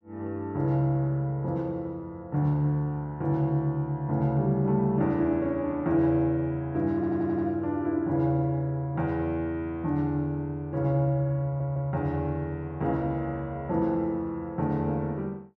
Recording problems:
stutter; at 7 s and at 11 s

